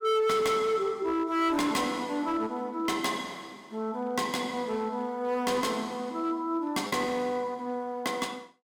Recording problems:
distortion; hard clipping, signal-to-distortion ratio 11 dB
packet loss; 0.5% of the sound replaced, filled with repeated pitch periods

